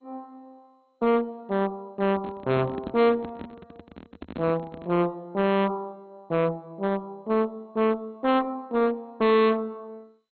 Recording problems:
codec artefacts; MP2, log-spectral distance 2 dB, nothing above 4.1 kHz
distortion; hard clipping, uneven, signal-to-distortion ratio 5 dB
handling noise; from 2 to 5 s; peak -5 dB vs average level

